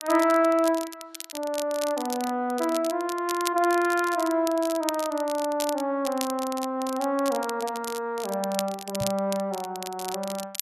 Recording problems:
crackling; vinyl, SNR 11 dB
microphone thump; at 9 s; peak -3 dB vs average level

